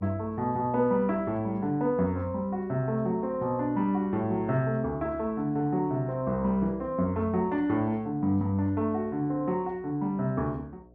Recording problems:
hum; 60 Hz, harmonics up to 720 Hz, SNR 26 dB

